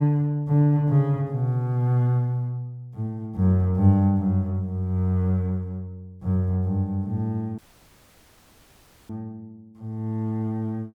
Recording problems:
audio cutting out; at 7.5 s for 1.5 s

